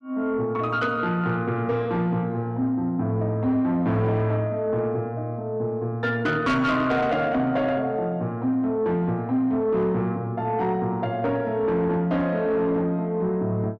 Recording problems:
distortion; soft clipping, signal-to-distortion ratio 12 dB

